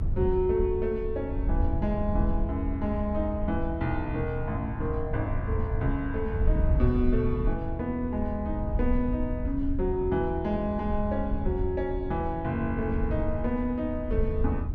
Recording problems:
low-frequency rumble; below 80 Hz, SNR 3 dB

